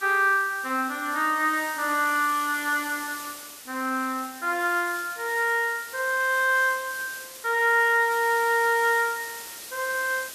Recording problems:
background hiss; slope 0 dB per octave, SNR 14 dB

